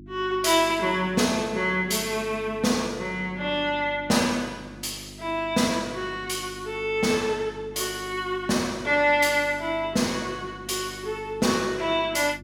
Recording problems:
electrical hum; 50 Hz, harmonics up to 350 Hz, SNR 19 dB

